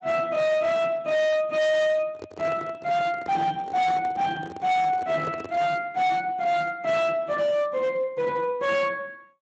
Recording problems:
lossy compression; Speex, log-spectral distance 3 dB
distortion; hard clipping, signal-to-distortion ratio 7 dB
handling noise; from 2 to 6 s; peak -8 dB vs average level

